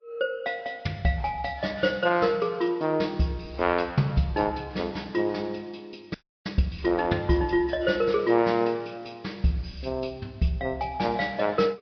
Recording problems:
treble cut off; nothing above 5.3 kHz
lossy codec; Vorbis, log-spectral distance 3 dB
audio freezing; at 6 s

